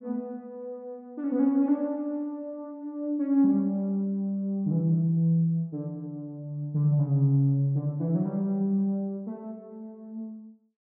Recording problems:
none

